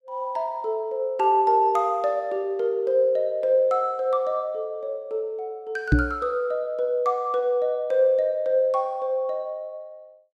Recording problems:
microphone thump; at 6 s; peak +8 dB vs average level

